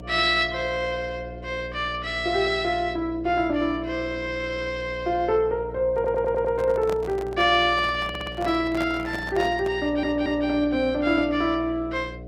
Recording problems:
lossy codec; Opus, log-spectral distance 2 dB
hum; 60 Hz, harmonics up to 720 Hz, SNR 15 dB
handling noise; from 6 to 10 s; peak -5 dB vs average level
audio stuttering; at 6 s, at 8 s and at 10 s

